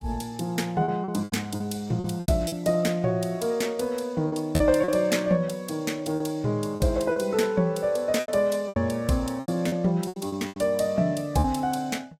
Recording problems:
lossy codec; AAC, log-spectral distance 2 dB, nothing above 15.1 kHz
lost packets; 9% of the sound replaced, filled with repeated pitch periods

